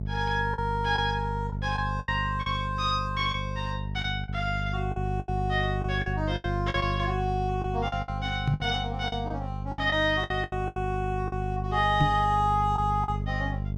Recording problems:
electrical hum; 50 Hz, harmonics up to 450 Hz, SNR 4 dB
lost packets; 9% of the sound replaced, filled with the last packet
knock on the microphone; at 8.5 s and at 12 s; peak +8 dB vs average level

